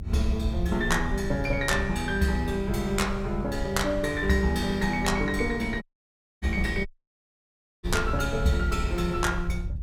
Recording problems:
rumble; below 84 Hz, SNR 7 dB
dropout; at 6 s for 0.5 s and at 7 s for 1 s

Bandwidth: 17 kHz